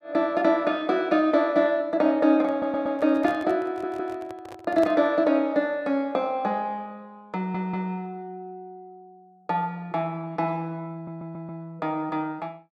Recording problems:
microphone handling noise; from 2.5 to 5 s; peak -5 dB vs average level
audio stuttering; 4 times, first at 2.5 s

